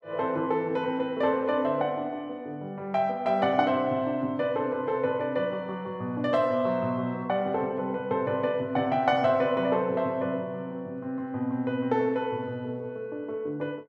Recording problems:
none

